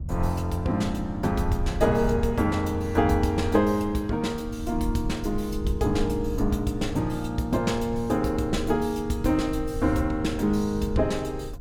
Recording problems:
rumble; below 90 Hz, SNR 10 dB

